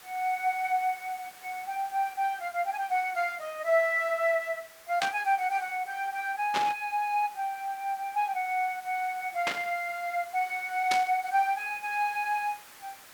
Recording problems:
background hiss; SNR 20 dB
static burst; 4 times, first at 5 s; peak +3 dB vs average level

